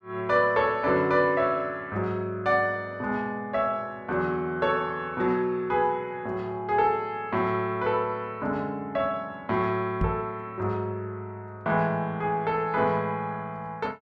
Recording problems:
microphone thump; at 10 s; peak +3 dB vs average level

